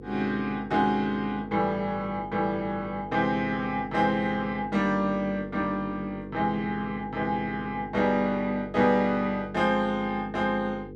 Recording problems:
electrical hum; 50 Hz, harmonics up to 500 Hz, SNR 14 dB

